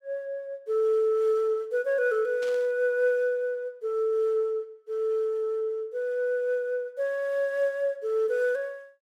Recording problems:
static burst; at 2.5 s; peak -12 dB vs average level

